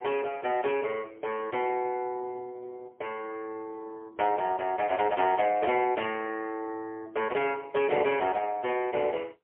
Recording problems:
phone line; 340 Hz to 3.2 kHz, AMR-NB, then MP3

